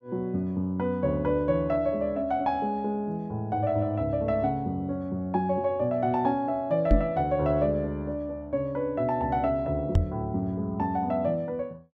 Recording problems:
microphone thump; at 7 s and at 10 s; peak +8 dB vs average level

